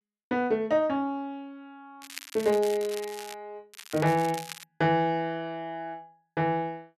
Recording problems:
crackle; from 2 to 3.5 s and at 3.5 s; loose cable, SNR 14 dB

